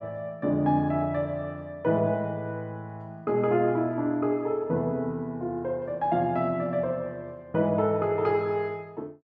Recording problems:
none

